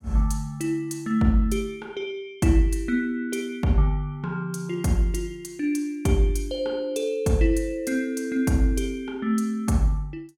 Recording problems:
none

